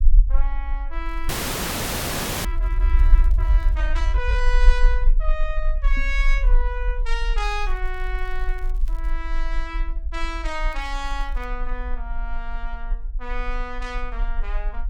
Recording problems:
rumble; below 42 Hz, SNR -6 dB
crackle; from 1 to 4 s, from 7.5 to 9 s and at 11 s; loose cable, SNR 25 dB
frozen audio; at 1.5 s for 1 s
microphone thump; at 6 s; peak -2 dB vs average level

